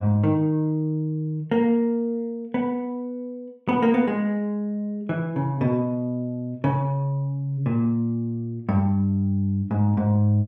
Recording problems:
none

